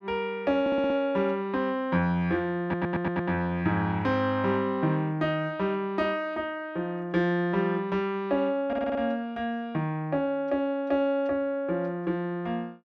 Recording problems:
audio stuttering; at 0.5 s, at 2.5 s and at 8.5 s

